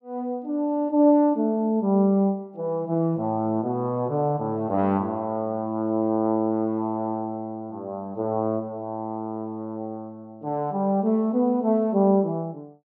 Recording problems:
none

